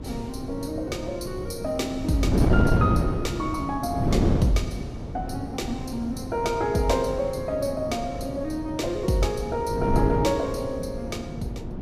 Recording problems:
electrical hum; 60 Hz, harmonics up to 600 Hz, SNR 19 dB
wind noise; below 310 Hz, SNR 1 dB

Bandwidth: 15.5 kHz